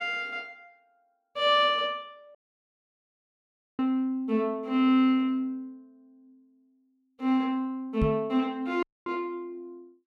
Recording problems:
dropout; at 2.5 s for 1.5 s and at 9 s
knock on the microphone; at 8 s; peak +3 dB vs average level

